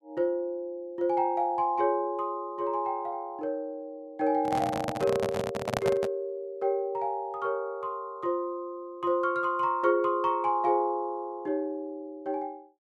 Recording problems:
handling noise; from 4.5 to 6 s; peak +4 dB vs average level

